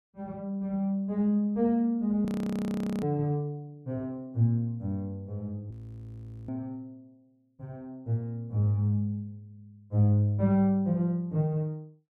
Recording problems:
audio freezing; at 2.5 s for 1 s and at 5.5 s for 1 s

